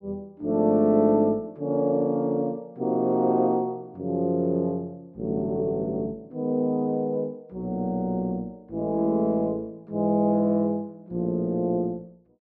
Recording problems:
none

